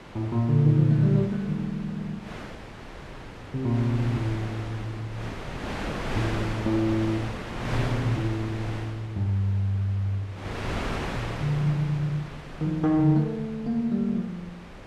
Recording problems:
wind noise; below 1.4 kHz, SNR 10 dB

